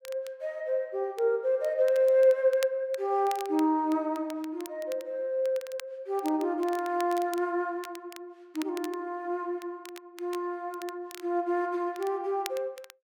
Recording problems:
crackling; vinyl, SNR 19 dB

